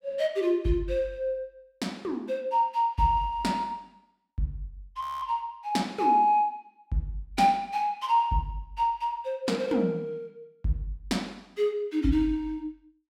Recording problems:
frozen audio; at 5 s

